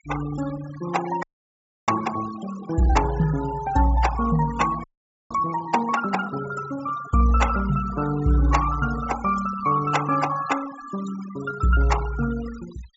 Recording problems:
treble cut off; nothing above 8 kHz
denoising artefacts; signal-to-artefact ratio 13 dB
frozen audio; at 1 s for 0.5 s and at 5 s

